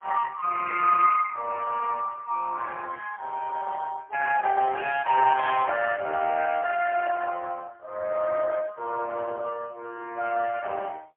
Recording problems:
telephone audio; 340 Hz to 2.5 kHz, AMR-NB, then MP3

